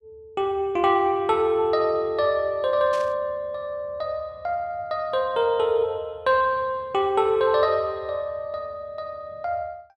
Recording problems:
burst of static; at 3 s; peak -11 dB vs average level

